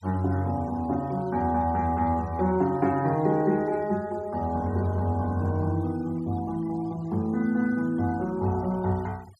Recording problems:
noise reduction artefacts; signal-to-artefact ratio 26 dB

